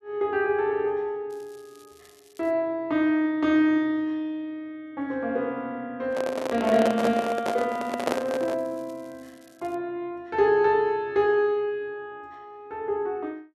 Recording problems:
crackle; from 1.5 to 2.5 s and from 7 to 10 s; loose cable, SNR 30 dB
microphone handling noise; from 6 to 8.5 s; peak +3 dB vs average level

